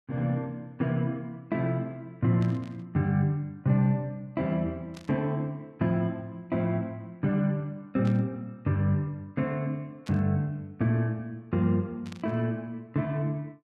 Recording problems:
burst of static; 5 times, first at 2.5 s; peak -11 dB vs average level

